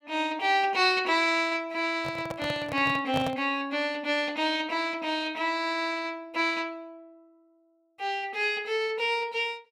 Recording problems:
microphone handling noise; from 2 to 3.5 s; peak 0 dB vs average level

